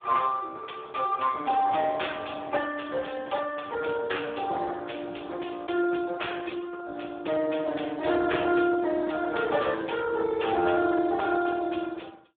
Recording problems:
phone line; 300 Hz to 3.5 kHz, Speex

